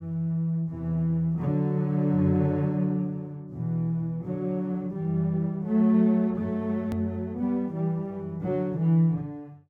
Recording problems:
hard cut with a click; at 7 s

